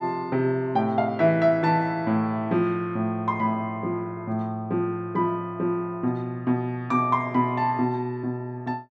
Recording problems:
none

